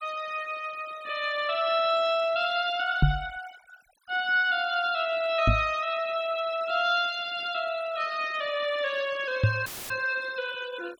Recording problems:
noise reduction artefacts; signal-to-artefact ratio 20 dB
microphone bump; at 3 s, at 5.5 s and at 9.5 s; peak +9 dB vs average level
audio cutting out; at 9.5 s; filled with static

